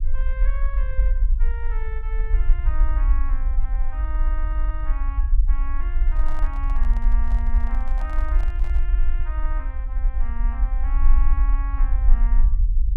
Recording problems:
rumble; below 46 Hz, strongest tone 20 Hz, SNR -15 dB
handling noise; from 6 to 9 s; peak -1 dB vs average level

